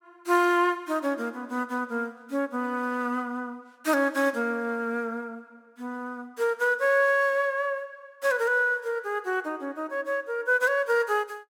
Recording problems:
none

